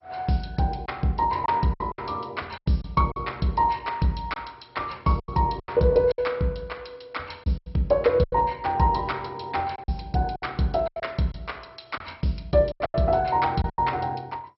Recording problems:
codec artefacts; MP2, log-spectral distance 4 dB, nothing above 5.5 kHz
packet loss; 9% of the sound replaced, filled with silence

